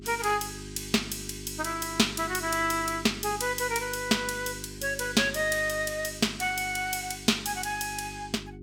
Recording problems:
hum; 50 Hz, harmonics up to 400 Hz, SNR 15 dB

